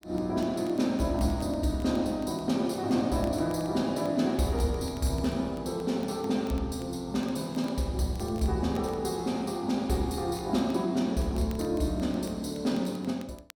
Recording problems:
crackling; vinyl, SNR 27 dB

